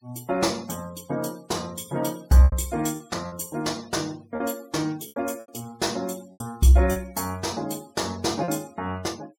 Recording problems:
noise reduction artefacts; signal-to-artefact ratio 22 dB
lost packets; 6% of the sound replaced, filled with repeated pitch periods

